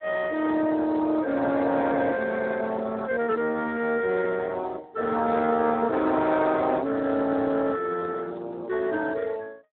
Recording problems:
phone line; 190 Hz to 3.7 kHz, Speex

